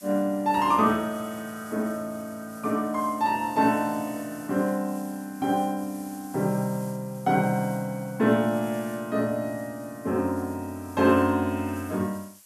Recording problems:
hiss; slope +2 dB per octave, SNR 21 dB

